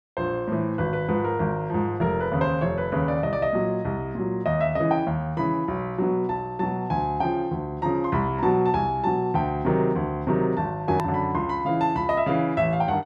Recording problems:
edit click; at 11 s

